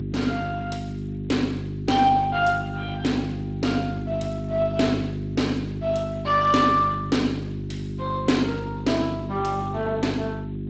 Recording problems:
lossy compression; Speex, log-spectral distance 3 dB, nothing above 7.8 kHz
electrical hum; 50 Hz, harmonics up to 400 Hz, SNR 6 dB

